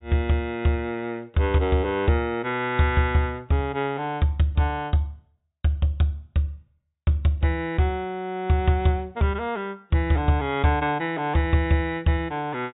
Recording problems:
treble missing; nothing above 4 kHz

